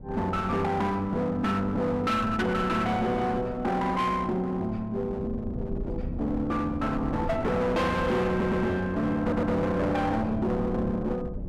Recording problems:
distorted audio; hard clipping, uneven, signal-to-distortion ratio 6 dB
wind noise; below 240 Hz, SNR 11 dB
audio stuttering; at 8.5 s and at 9 s

